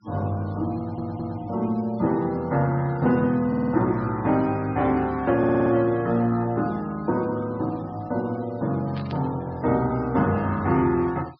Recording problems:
treble cut off; nothing above 5.5 kHz
denoising artefacts; signal-to-artefact ratio 26 dB
audio stuttering; at 1 s, at 3.5 s and at 5.5 s
static burst; at 9 s; peak -13 dB vs average level

